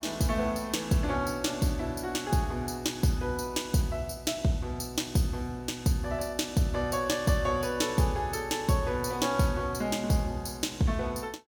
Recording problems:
none

